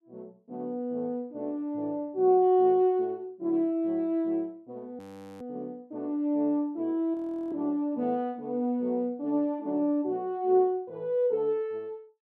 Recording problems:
frozen audio; at 5 s and at 7 s

